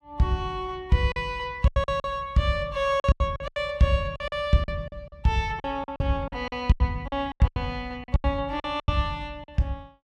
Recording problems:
lost packets; 14% of the sound replaced, filled with silence

